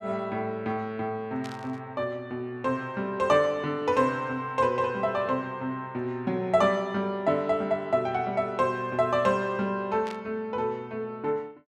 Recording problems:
burst of static; at 1.5 s and at 10 s; peak -10 dB vs average level

